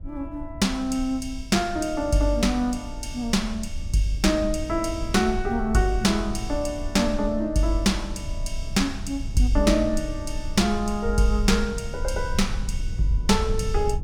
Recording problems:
rumble; below 66 Hz, SNR 9 dB

